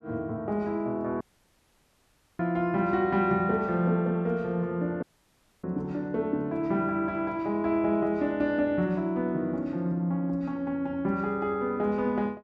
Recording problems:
audio cutting out; at 1 s for 1 s and at 5 s for 0.5 s

